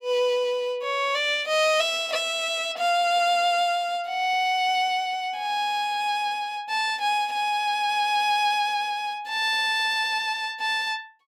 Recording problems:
none

